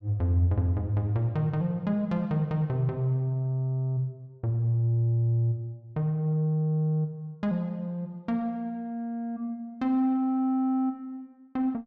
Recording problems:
none

